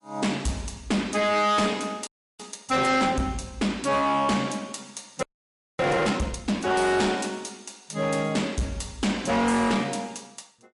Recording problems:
codec artefacts; MP3, log-spectral distance 4 dB, nothing above 11 kHz
distorted audio; hard clipping, signal-to-distortion ratio 8 dB
frozen audio; at 2 s and at 5 s for 0.5 s

